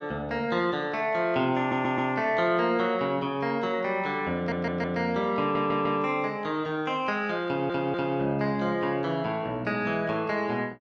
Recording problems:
stutter; 4 times, first at 1.5 s

